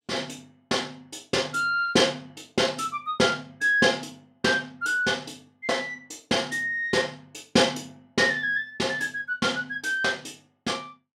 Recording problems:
none

